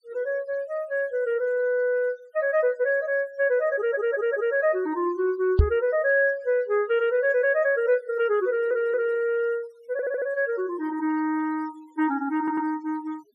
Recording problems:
denoising artefacts; signal-to-artefact ratio 28 dB
audio stuttering; 4 times, first at 4 s
microphone thump; at 5.5 s; peak +10 dB vs average level

